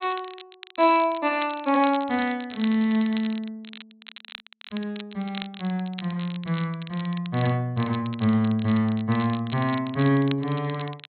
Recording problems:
low-pass filter; nothing above 4.2 kHz
crackle; vinyl, SNR 18 dB

